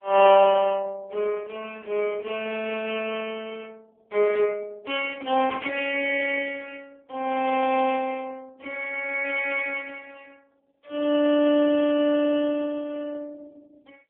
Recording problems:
phone line; 280 Hz to 3.2 kHz, AMR-NB

